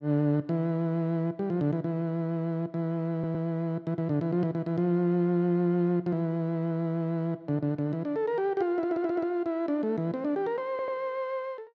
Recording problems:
audio stuttering; at 3 s, at 9 s and at 11 s

